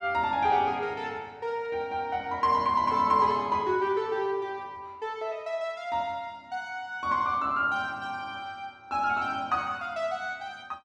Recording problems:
none

